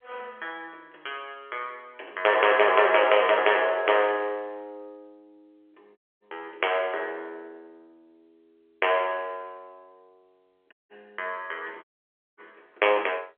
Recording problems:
telephone audio; 320 Hz to 3.4 kHz, G.711
audio cutting out; at 6 s, at 11 s and at 12 s for 0.5 s

